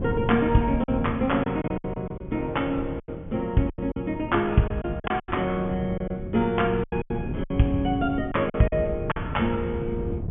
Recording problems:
low-pass filter; nothing above 3.4 kHz
wind on the microphone; below 210 Hz, SNR 9 dB
lost packets; 10% of the sound replaced, filled with silence

